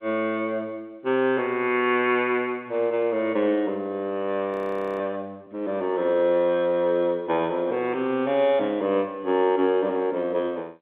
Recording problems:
phone line; 170 Hz to 3.6 kHz, G.711
frozen audio; at 4.5 s

